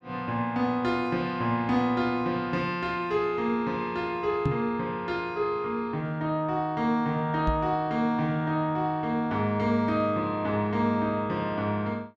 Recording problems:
microphone bump; at 4.5 s and at 7.5 s; peak +5 dB vs average level

